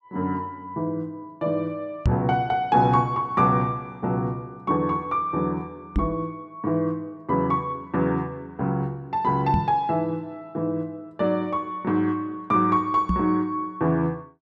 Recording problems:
microphone bump; 4 times, first at 2 s; peak +6 dB vs average level

